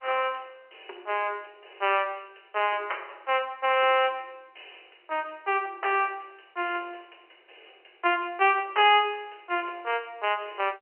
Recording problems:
phone line; 300 Hz to 3.1 kHz, G.711

